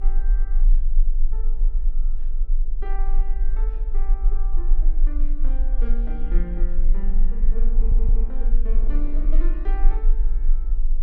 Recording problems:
rumble; below 32 Hz, strongest tone 20 Hz, SNR -15 dB
wind noise; below 380 Hz, SNR 12 dB
stutter; at 8 s

